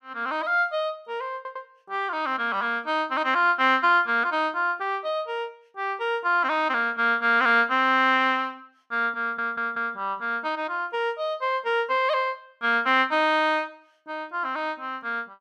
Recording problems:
audio stuttering; at 1.5 s and at 9 s

